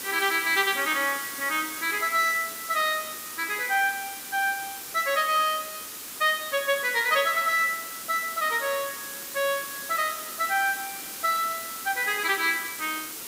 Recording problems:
background hiss; slope -1 dB per octave, SNR 9 dB

